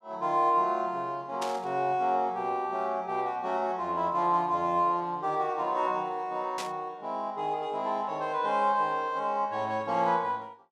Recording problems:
static burst; at 1.5 s and at 6.5 s; peak -4 dB vs average level

